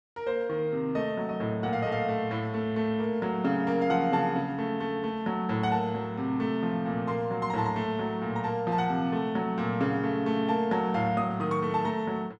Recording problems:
none

